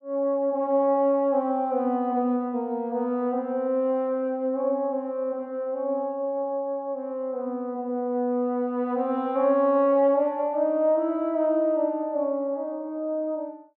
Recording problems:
none

